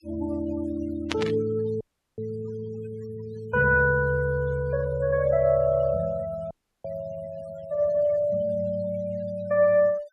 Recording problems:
denoising artefacts; signal-to-artefact ratio 21 dB
burst of static; at 1 s; peak 0 dB vs average level
dropout; at 2 s and at 6.5 s

